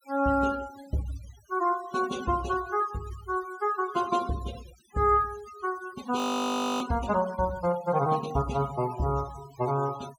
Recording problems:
noise reduction artefacts; signal-to-artefact ratio 16 dB
frozen audio; at 6 s for 0.5 s

